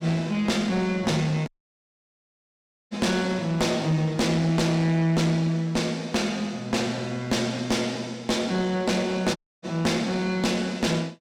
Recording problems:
distortion; soft clipping, signal-to-distortion ratio 10 dB
dropout; at 1.5 s for 1.5 s and at 9.5 s

